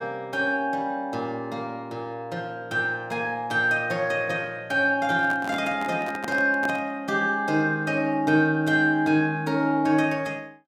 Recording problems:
handling noise; from 5 to 7 s; peak -4 dB vs average level

